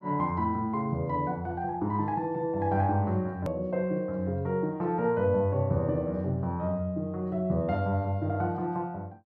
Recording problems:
edit click; at 3.5 s

